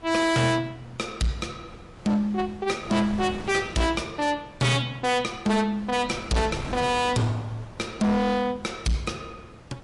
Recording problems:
lossy codec; MP3, log-spectral distance 2 dB, nothing above 11 kHz
distortion; hard clipping, signal-to-distortion ratio 7 dB
wind on the microphone; below 830 Hz, SNR 16 dB

